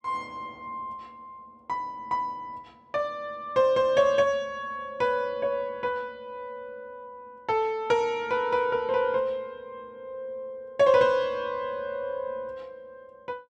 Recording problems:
none

